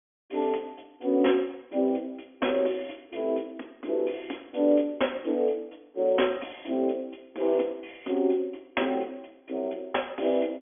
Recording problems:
telephone audio; 220 Hz to 3.4 kHz, G.726

